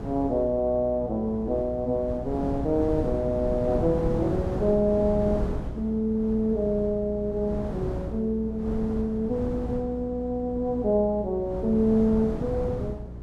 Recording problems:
hum; 60 Hz, harmonics up to 480 Hz, SNR 14 dB
wind noise; below 330 Hz, SNR 8 dB

